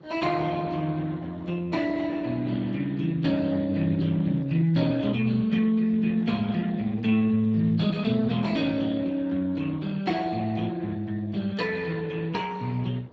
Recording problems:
codec artefacts; Speex, log-spectral distance 4 dB
wind noise; below 610 Hz, SNR 25 dB

